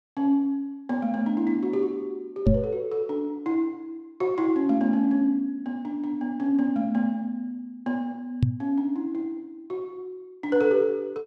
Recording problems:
knock on the microphone; at 2.5 s and at 8.5 s; peak +9 dB vs average level

